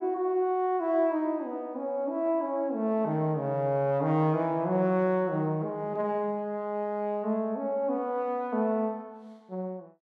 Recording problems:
none

